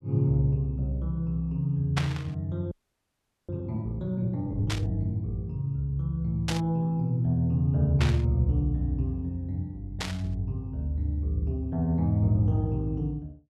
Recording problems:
burst of static; 5 times, first at 2 s; peak +2 dB vs average level
frozen audio; at 2.5 s for 1 s

